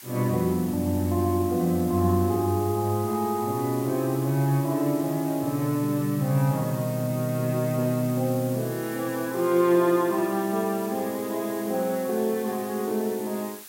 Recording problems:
background hiss; slope +2 dB per octave, SNR 15 dB

